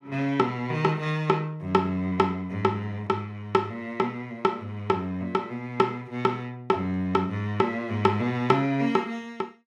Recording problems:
none

